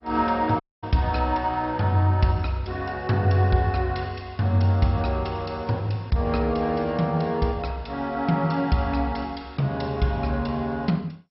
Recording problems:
lossy compression; MP2, log-spectral distance 3 dB, nothing above 5.5 kHz
dropout; at 0.5 s

